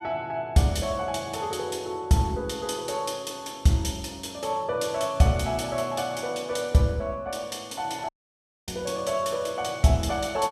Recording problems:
dropout; at 8 s for 0.5 s

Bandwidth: 14.5 kHz